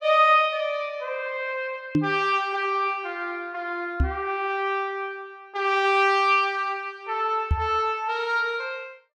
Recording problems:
knock on the microphone; at 2 s, at 4 s and at 7.5 s; peak +6 dB vs average level

